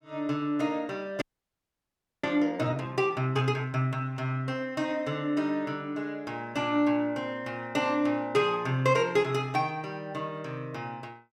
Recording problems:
frozen audio; at 1 s for 1 s

